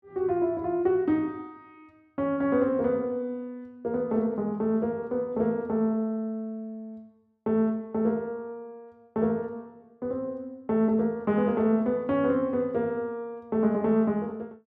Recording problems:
none

